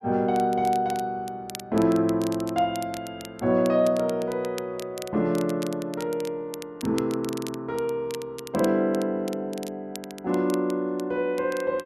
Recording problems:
crackle; vinyl, SNR 17 dB

